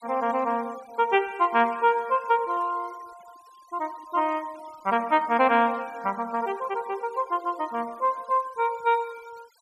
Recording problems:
denoising artefacts; signal-to-artefact ratio 25 dB

